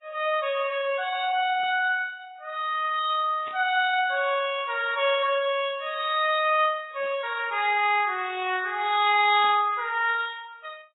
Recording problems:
lossy codec; Vorbis, then AAC, log-spectral distance 3 dB, nothing above 3.4 kHz
burst of static; 4 times, first at 1.5 s; peak -14 dB vs average level

